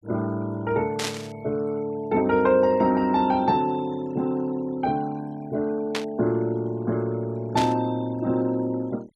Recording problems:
denoising artefacts; signal-to-artefact ratio 25 dB
burst of static; at 1 s, at 6 s and at 7.5 s; peak 0 dB vs average level

